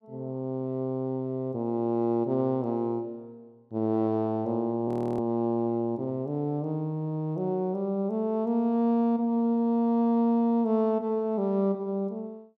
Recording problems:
audio freezing; at 5 s

